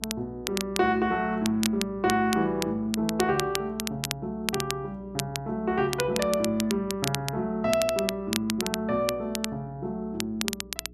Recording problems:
mains hum; 60 Hz, harmonics up to 420 Hz, SNR 21 dB
crackle; vinyl, SNR 6 dB

